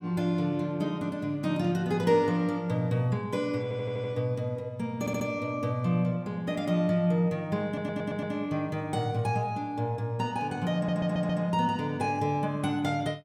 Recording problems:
audio stuttering; 4 times, first at 3.5 s

